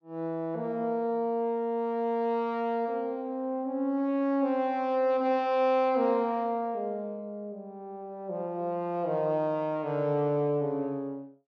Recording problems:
none

